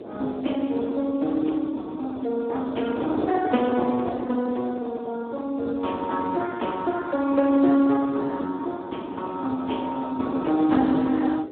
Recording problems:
telephone audio; 190 Hz to 3.6 kHz, Speex
wind on the microphone; below 540 Hz, SNR 11 dB

